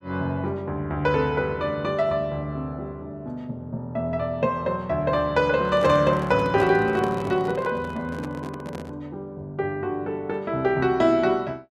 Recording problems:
handling noise; from 5.5 to 9 s; peak -2 dB vs average level

